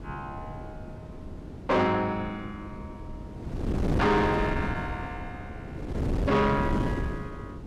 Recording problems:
distorted audio; soft clipping, signal-to-distortion ratio 7 dB
wind noise; below 360 Hz, SNR 5 dB

